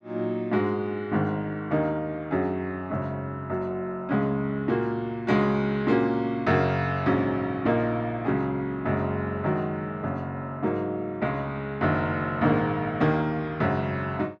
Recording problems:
none

